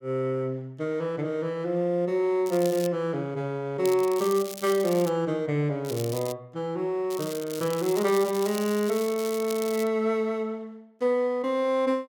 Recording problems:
crackle; 4 times, first at 2.5 s; loose cable, SNR 13 dB

